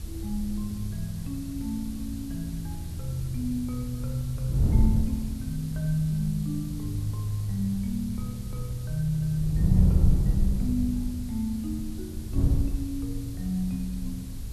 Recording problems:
hiss; slope +1 dB per octave, SNR 17 dB
wind on the microphone; below 110 Hz, SNR 0 dB

